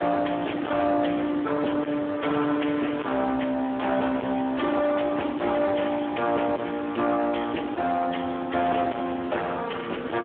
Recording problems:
telephone audio; 220 Hz to 3.2 kHz, Speex
distorted audio; soft clipping, signal-to-distortion ratio 7 dB

